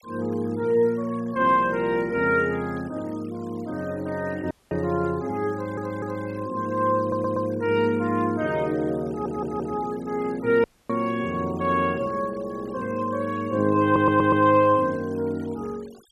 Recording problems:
denoising artefacts; signal-to-artefact ratio 24 dB
dropout; at 4.5 s and at 11 s
audio stuttering; 4 times, first at 5.5 s

